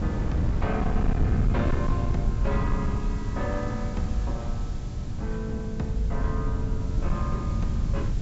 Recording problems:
treble missing; nothing above 7.6 kHz
distorted audio; hard clipping, signal-to-distortion ratio 11 dB
background hiss; SNR 19 dB
low-frequency rumble; below 110 Hz, SNR -2 dB
wind noise; below 140 Hz, SNR 2 dB

